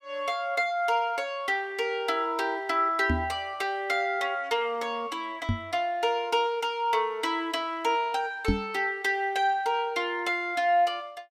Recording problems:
microphone bump; at 3 s, at 5.5 s and at 8.5 s; peak +5 dB vs average level

